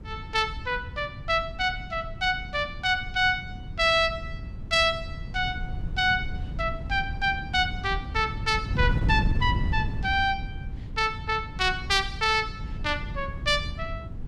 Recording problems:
wind noise; below 130 Hz, SNR 8 dB

